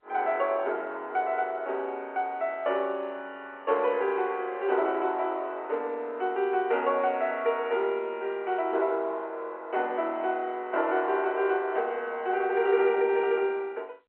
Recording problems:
telephone audio; 300 Hz to 3.2 kHz, G.711

